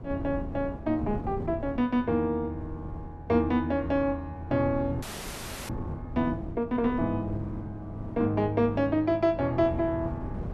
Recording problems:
wind noise; below 270 Hz, SNR 12 dB
audio freezing; at 5 s for 0.5 s

